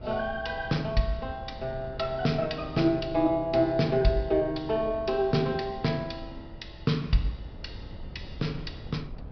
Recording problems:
low-pass filter; nothing above 5.5 kHz
wind on the microphone; below 160 Hz, SNR 16 dB

